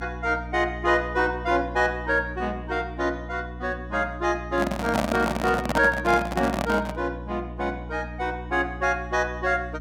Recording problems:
hum; 60 Hz, harmonics up to 300 Hz, SNR 12 dB
microphone handling noise; from 4.5 to 7 s; peak +4 dB vs average level

